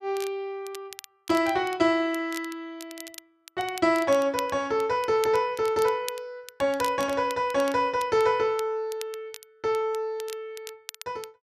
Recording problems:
crackling; vinyl, SNR 17 dB

